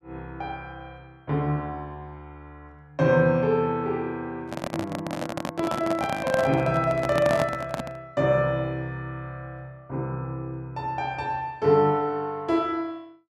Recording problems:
microphone handling noise; from 4.5 to 8 s; peak +2 dB vs average level

